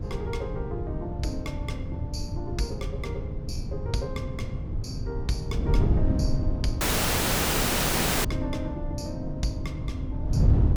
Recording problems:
low-frequency rumble; below 100 Hz, SNR 14 dB
wind noise; below 130 Hz, SNR -5 dB
dropout; at 7 s for 1.5 s

